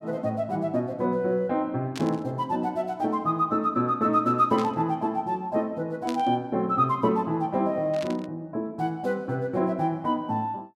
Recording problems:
burst of static; 4 times, first at 2 s; peak -6 dB vs average level

